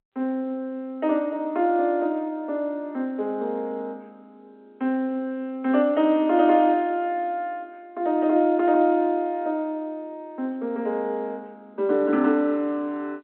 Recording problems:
phone line; 220 Hz to 3.6 kHz, G.711

